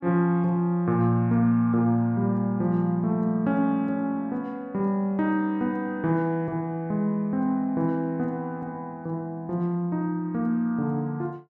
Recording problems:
none

